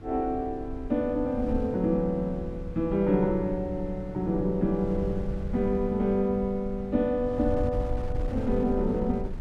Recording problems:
wind on the microphone; below 100 Hz, SNR 9 dB

